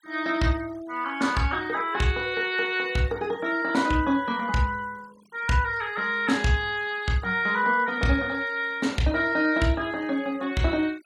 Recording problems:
denoising artefacts; signal-to-artefact ratio 24 dB

